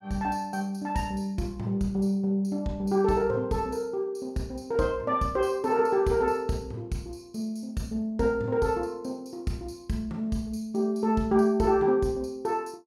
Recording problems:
none

